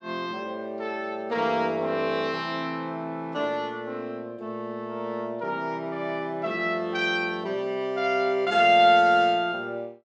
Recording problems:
none

